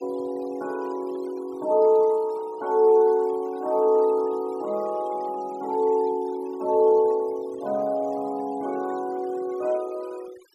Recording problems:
noise reduction artefacts; signal-to-artefact ratio 25 dB

